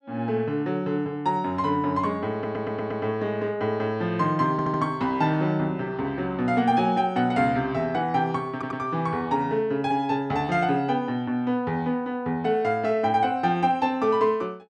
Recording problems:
stutter; at 2.5 s, at 4.5 s and at 8.5 s

